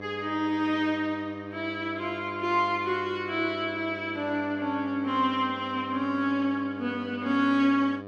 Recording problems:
hum; 50 Hz, harmonics up to 2.4 kHz, SNR 13 dB

